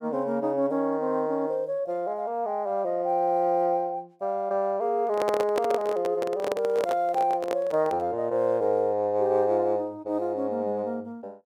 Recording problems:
handling noise; from 5 to 8 s; peak +1 dB vs average level

